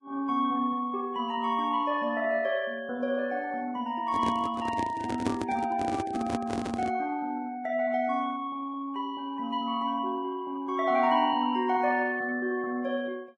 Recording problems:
lossy codec; Vorbis, log-spectral distance 2 dB
microphone handling noise; from 4 to 7 s; peak +3 dB vs average level

